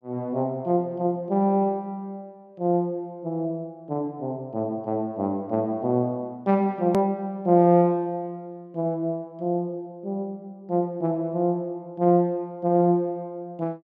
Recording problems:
hard cut with a click; at 7 s

